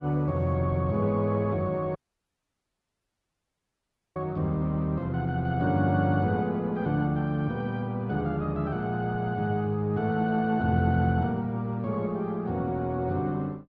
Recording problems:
lossy codec; Opus, log-spectral distance 2 dB
audio cutting out; at 2 s for 2 s

